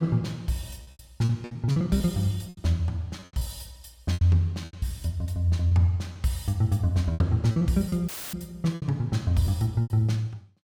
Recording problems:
lost packets; 11% of the sound replaced, filled with repeated pitch periods
dropout; at 8 s; filled with static

